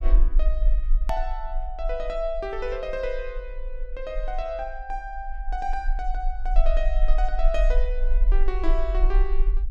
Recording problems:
low-frequency rumble; below 38 Hz, strongest tone 20 Hz, SNR -5 dB
edit click; at 1 s

